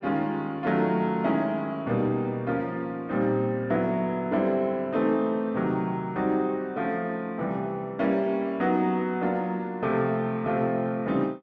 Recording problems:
none

